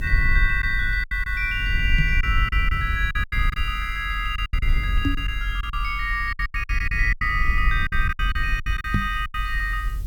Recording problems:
hiss; slope +4 dB per octave, SNR 27 dB
rumble; below 56 Hz, SNR 3 dB
lost packets; 12% of the sound replaced, filled with silence
microphone bump; at 2 s, at 5 s and at 9 s; peak +5 dB vs average level

